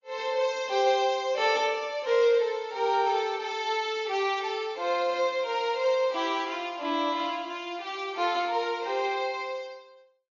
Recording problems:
lossy codec; MP3, log-spectral distance 2 dB, nothing above 6.7 kHz

